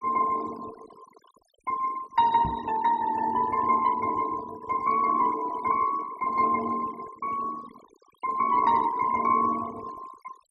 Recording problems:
noise reduction artefacts; signal-to-artefact ratio 19 dB
microphone bump; at 2.5 s; peak -5 dB vs average level

